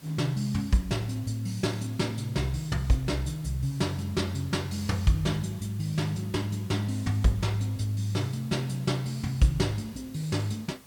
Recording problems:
hiss; slope -3 dB per octave, SNR 22 dB

